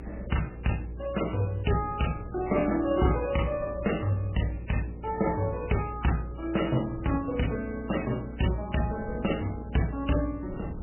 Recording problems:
codec artefacts; MP3, log-spectral distance 5 dB, nothing above 3 kHz
hum; 60 Hz, harmonics up to 480 Hz, SNR 12 dB
wind noise; below 250 Hz, SNR 18 dB

